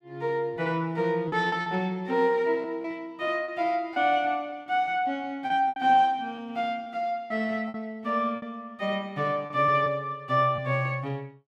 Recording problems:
packet loss; 6% of the sound replaced, filled with repeated pitch periods

